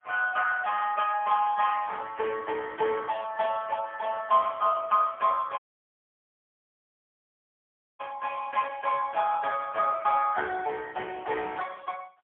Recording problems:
phone line; 320 Hz to 3.1 kHz, AMR-NB, then MP3
dropout; at 5.5 s for 2.5 s

